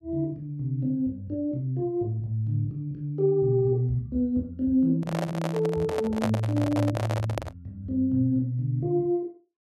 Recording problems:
handling noise; from 5 to 7.5 s; peak +2 dB vs average level

